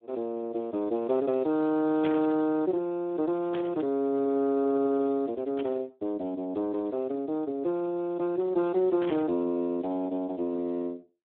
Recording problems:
telephone audio; 190 Hz to 3 kHz, Speex
static burst; 4 times, first at 2 s; peak -4 dB vs average level

